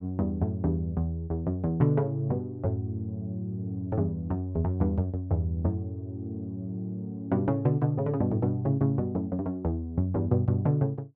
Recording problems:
none

